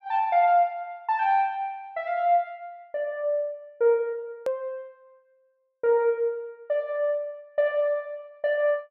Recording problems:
edit click; at 4.5 s

